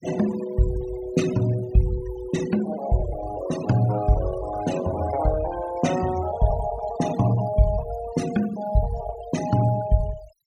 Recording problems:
denoising artefacts; signal-to-artefact ratio 13 dB

